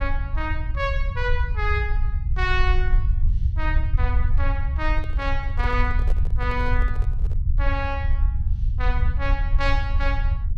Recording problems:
rumble; below 70 Hz, SNR -4 dB
microphone handling noise; from 5 to 7.5 s; peak -6 dB vs average level

